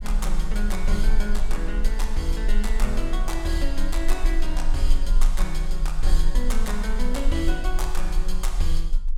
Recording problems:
rumble; below 32 Hz, strongest tone 20 Hz, SNR -3 dB

